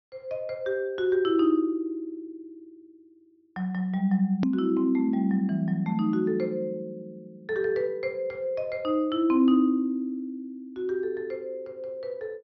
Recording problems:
treble cut off; nothing above 5.9 kHz
hard cut with a click; at 4.5 s

